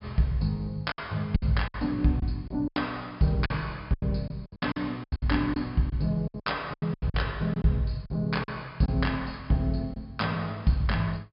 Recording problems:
treble missing; nothing above 5.5 kHz
lost packets; 11% of the sound replaced, filled with silence

